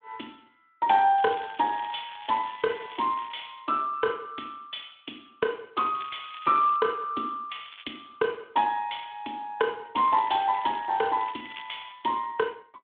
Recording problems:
telephone audio; 260 Hz to 3.6 kHz, Speex
crackling; 4 times, first at 1 s; loose cable, SNR 18 dB

